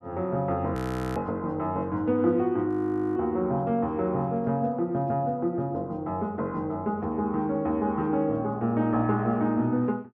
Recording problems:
audio freezing; at 1 s and at 2.5 s

